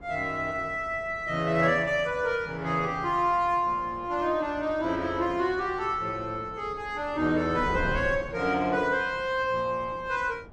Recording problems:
wind noise; below 440 Hz, SNR 16 dB

